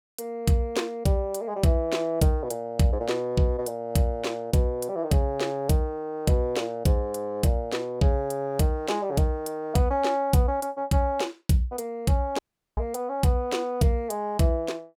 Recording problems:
dropout; at 12 s

